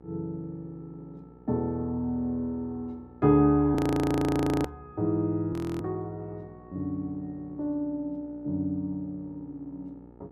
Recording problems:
hum; 60 Hz, harmonics up to 1.4 kHz, SNR 23 dB
audio freezing; at 4 s for 1 s and at 5.5 s

